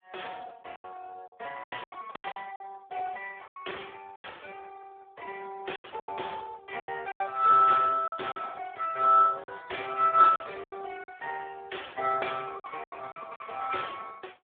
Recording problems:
phone line; 320 Hz to 3.5 kHz, Speex
lost packets; 10% of the sound replaced, filled with silence

